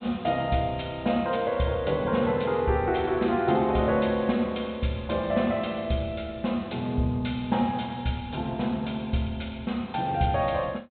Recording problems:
treble cut off; nothing above 4 kHz

